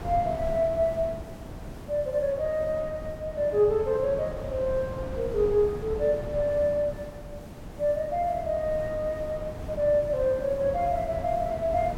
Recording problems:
background hiss; slope -4 dB per octave, SNR 29 dB
wind noise; below 370 Hz, SNR 12 dB

